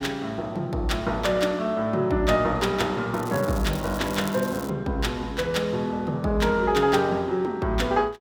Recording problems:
crackle; from 3 to 4.5 s; loose cable, SNR 16 dB

